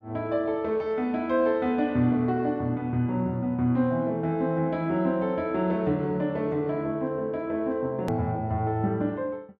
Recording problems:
hard cut with a click; at 8 s

